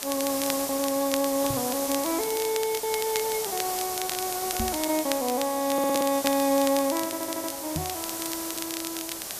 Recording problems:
background hiss; SNR 4 dB
crackle; vinyl, SNR 9 dB
lost packets; 8% of the sound replaced, filled with repeated pitch periods
knock on the microphone; at 1.5 s, at 4.5 s and at 8 s; peak 0 dB vs average level
stutter; at 5.5 s and at 7 s

